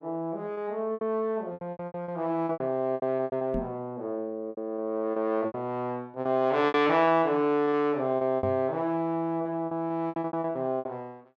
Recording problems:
lost packets; 15% of the sound replaced, filled with repeated pitch periods
knock on the microphone; at 3.5 s and at 8.5 s; peak -1 dB vs average level

